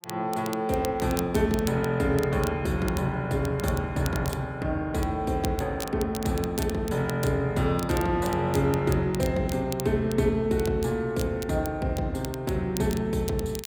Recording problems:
crackling; vinyl, SNR 15 dB

